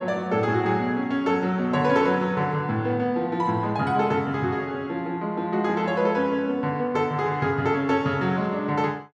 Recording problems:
none

